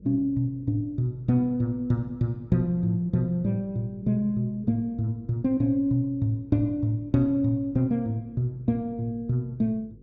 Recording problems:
mains hum; 50 Hz, harmonics up to 500 Hz, SNR 25 dB

